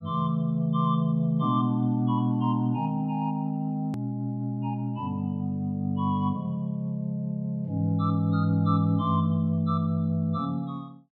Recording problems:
edit click; at 4 s

